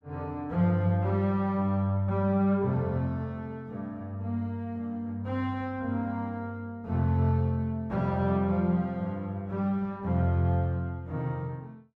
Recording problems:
none

